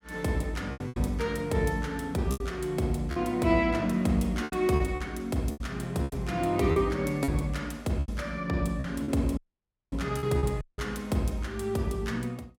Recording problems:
packet loss; 8% of the sound replaced, filled with repeated pitch periods
dropout; at 9.5 s for 0.5 s and at 11 s

